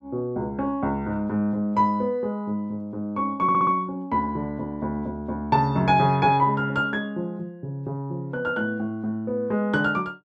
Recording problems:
stutter; at 3.5 s

